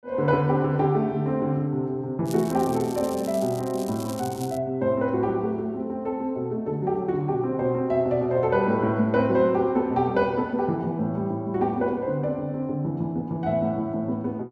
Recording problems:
crackle; from 2.5 to 4.5 s; loose cable, SNR 17 dB

